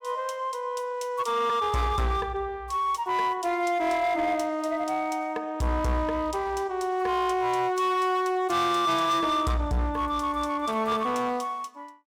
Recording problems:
distorted audio; hard clipping, signal-to-distortion ratio 11 dB

